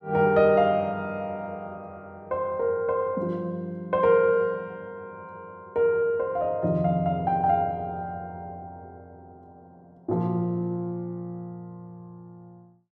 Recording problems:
none

